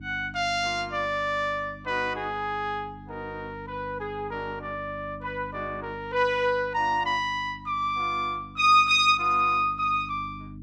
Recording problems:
electrical hum; 50 Hz, harmonics up to 300 Hz, SNR 19 dB

